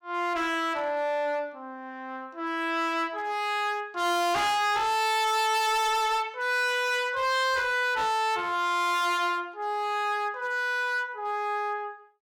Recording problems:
distorted audio; hard clipping, signal-to-distortion ratio 6 dB

